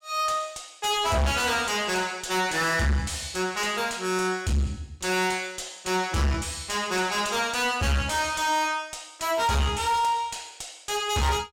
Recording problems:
distortion; soft clipping, signal-to-distortion ratio 5 dB

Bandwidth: 16.5 kHz